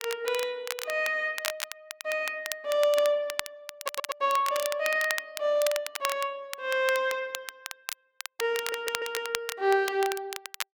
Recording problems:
crackling; vinyl, SNR 8 dB
audio stuttering; at 4 s and at 8.5 s

